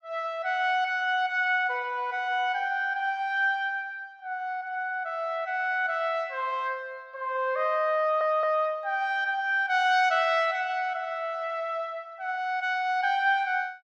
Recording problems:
audio stuttering; at 8 s

